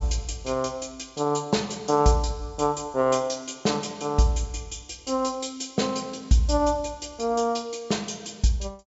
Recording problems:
treble missing; nothing above 8 kHz

